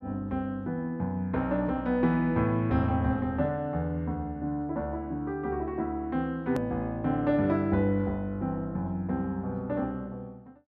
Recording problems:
hard cut with a click; at 6.5 s

